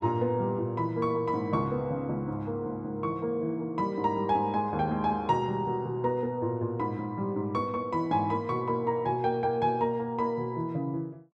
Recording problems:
none

